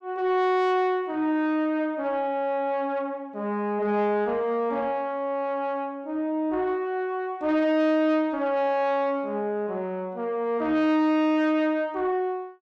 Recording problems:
distorted audio; soft clipping, signal-to-distortion ratio 10 dB

